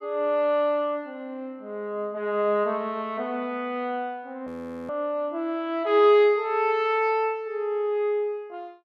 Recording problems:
frozen audio; at 4.5 s

